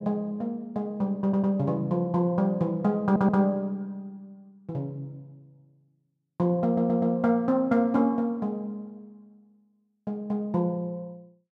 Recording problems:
stutter; at 1 s, at 3 s and at 6.5 s

